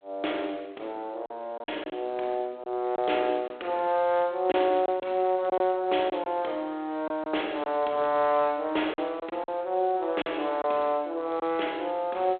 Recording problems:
telephone audio; 260 Hz to 3.5 kHz, G.726
packet loss; 5% of the sound replaced, filled with silence

